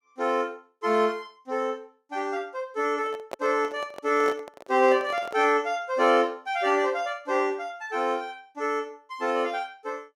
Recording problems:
microphone handling noise; from 3 to 5.5 s; peak -4 dB vs average level

